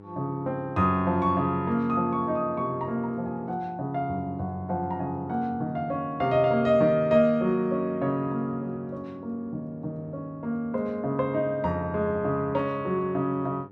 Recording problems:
hum; 50 Hz, harmonics up to 1.4 kHz, SNR 23 dB

